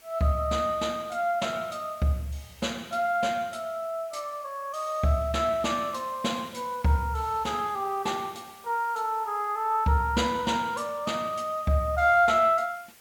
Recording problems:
background hiss; slope -1 dB per octave, SNR 25 dB

